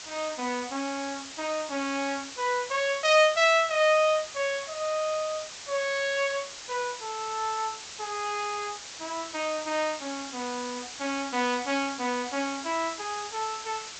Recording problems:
low-pass filter; nothing above 8 kHz
hiss; slope +2 dB per octave, SNR 11 dB

